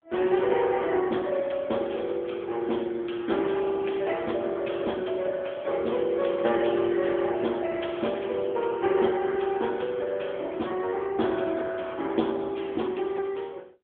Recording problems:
phone line; 240 Hz to 3.4 kHz, AMR-NB

